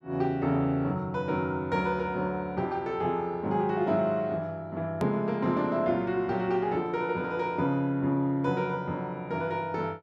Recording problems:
hard cut with a click; at 5 s

